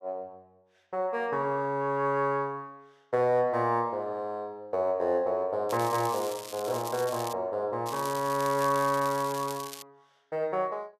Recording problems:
crackle; from 5.5 to 7.5 s and from 8 to 10 s; loose cable, SNR 13 dB

